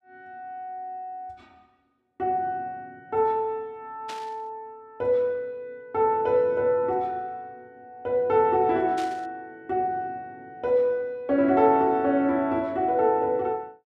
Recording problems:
static burst; at 4 s and at 9 s; peak -10 dB vs average level

